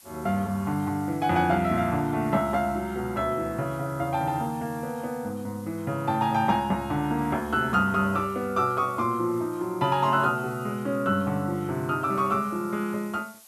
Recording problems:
hiss; SNR 24 dB

